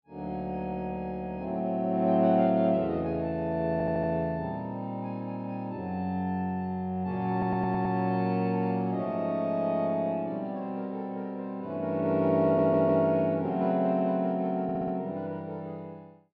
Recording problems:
treble cut off; nothing above 5.5 kHz
stutter; 4 times, first at 3.5 s

